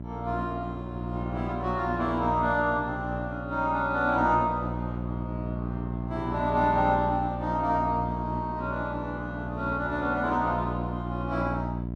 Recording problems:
hum; 60 Hz, harmonics up to 720 Hz, SNR 6 dB

